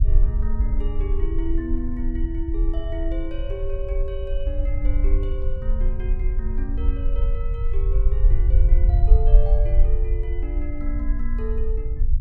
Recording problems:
low-frequency rumble; below 50 Hz, SNR -10 dB

